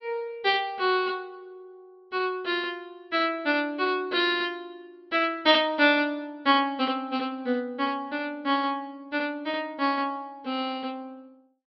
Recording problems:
treble missing; nothing above 5.5 kHz

